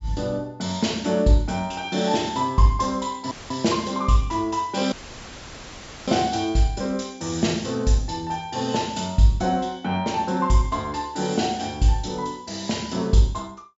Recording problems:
low-pass filter; nothing above 8 kHz
audio cutting out; at 3.5 s and at 5 s for 1 s; filled with static

